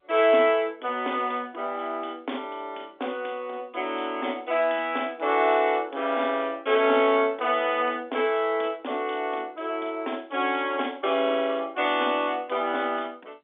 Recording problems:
telephone audio; 240 Hz to 3.6 kHz, G.711

